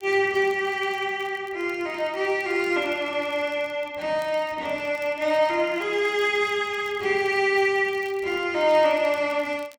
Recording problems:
crackle; vinyl, SNR 29 dB

